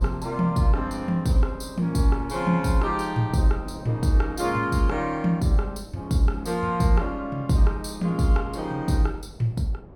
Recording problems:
wind noise; below 400 Hz, SNR 21 dB

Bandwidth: 17 kHz